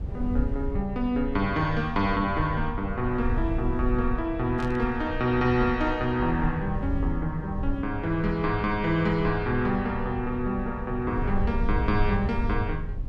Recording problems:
rumble; below 86 Hz, SNR 6 dB
burst of static; at 4.5 s; peak -12 dB vs average level

